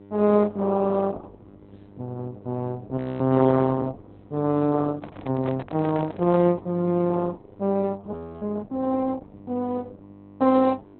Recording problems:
lossy compression; Opus, log-spectral distance 3 dB, nothing above 4 kHz
electrical hum; 50 Hz, harmonics up to 1.4 kHz, SNR 24 dB
frozen audio; at 3 s and at 8 s
microphone handling noise; from 5 to 6.5 s; peak -6 dB vs average level

